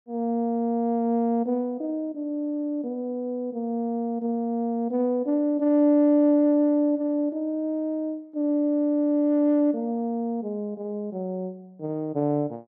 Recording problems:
none

